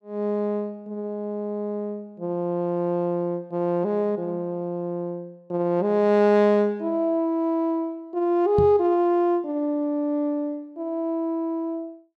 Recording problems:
microphone bump; at 8.5 s; peak +2 dB vs average level

